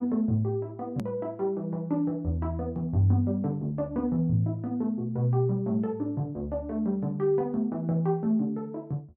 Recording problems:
click at an edit; at 1 s

